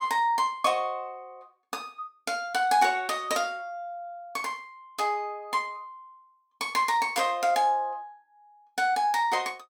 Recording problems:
none

